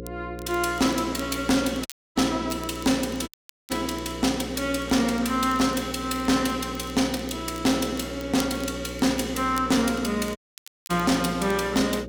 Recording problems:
distortion; hard clipping, signal-to-distortion ratio 12 dB
electrical hum; 60 Hz, harmonics up to 540 Hz, SNR 12 dB
crackling; vinyl, SNR 21 dB
audio cutting out; at 2 s, at 3.5 s and at 10 s for 0.5 s

